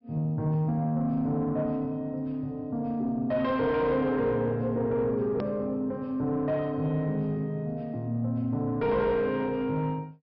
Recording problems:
treble missing; nothing above 5.4 kHz
distortion; soft clipping, signal-to-distortion ratio 10 dB
hard cut with a click; at 5.5 s

